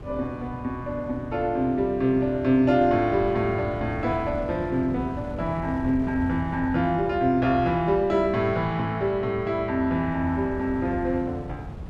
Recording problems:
wind on the microphone; below 210 Hz, SNR 13 dB

